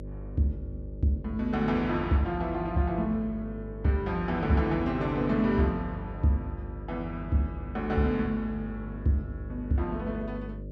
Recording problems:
hum; 50 Hz, harmonics up to 600 Hz, SNR 11 dB

